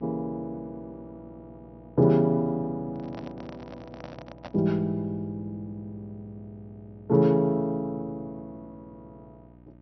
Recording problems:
treble missing; nothing above 5.9 kHz
hum; 60 Hz, harmonics up to 1.3 kHz, SNR 24 dB
microphone handling noise; from 3 to 4.5 s; peak -9 dB vs average level

